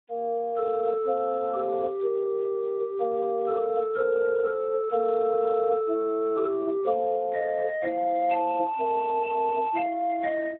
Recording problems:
telephone audio; 280 Hz to 2.1 kHz, Speex

